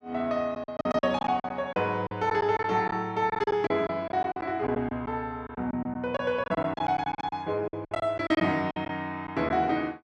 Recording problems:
packet loss; 13% of the sound replaced, filled with silence

